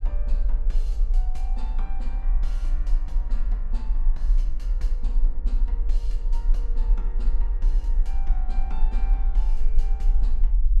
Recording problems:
low-frequency rumble; below 38 Hz, strongest tone 24 Hz, SNR -18 dB

